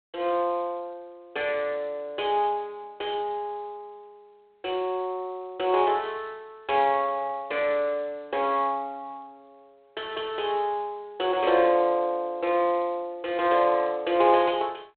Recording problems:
telephone audio; 370 Hz to 3.7 kHz, G.726

